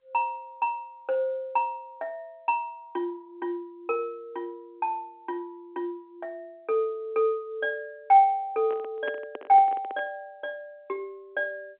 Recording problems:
phone line; 300 Hz to 3.3 kHz, G.711
microphone handling noise; from 8.5 to 10 s; peak -4 dB vs average level

